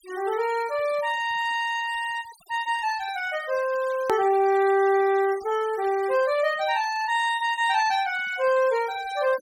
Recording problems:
noise reduction artefacts; signal-to-artefact ratio 20 dB
edit click; at 4 s

